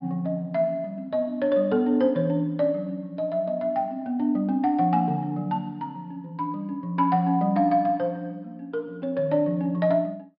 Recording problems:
treble missing; nothing above 5.5 kHz

